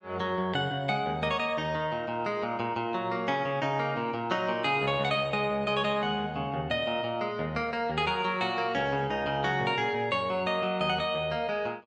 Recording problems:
none

